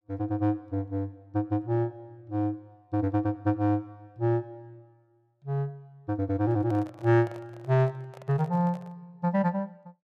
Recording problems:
microphone handling noise; from 6.5 to 9 s; peak -12 dB vs average level

